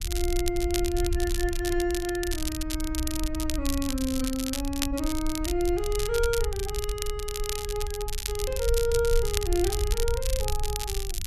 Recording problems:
rumble; below 62 Hz, SNR 4 dB
crackling; vinyl, SNR 5 dB

